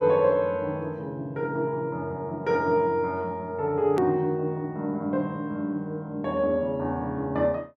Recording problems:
edit click; at 4 s

